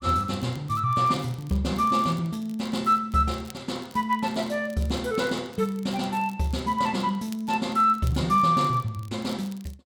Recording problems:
crackle; vinyl, SNR 25 dB

